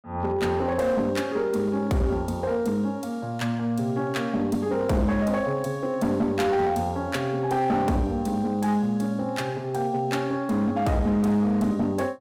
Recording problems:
distorted audio; hard clipping, uneven, signal-to-distortion ratio 12 dB

